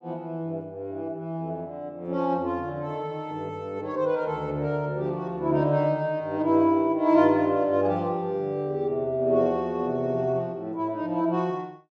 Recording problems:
none

